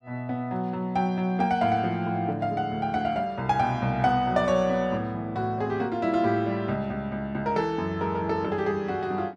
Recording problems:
none

